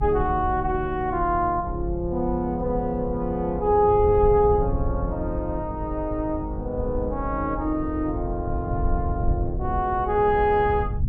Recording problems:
rumble; below 100 Hz, SNR 7 dB

